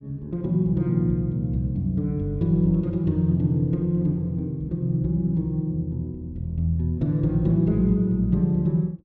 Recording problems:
none

